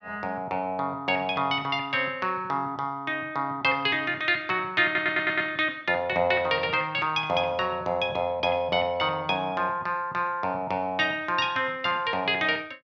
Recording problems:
audio stuttering; at 5 s

